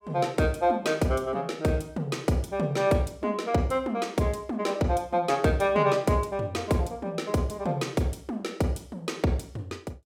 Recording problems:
none

